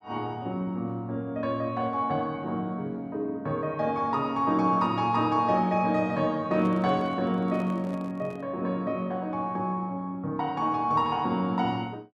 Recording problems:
microphone handling noise; from 6.5 to 8.5 s; peak -11 dB vs average level

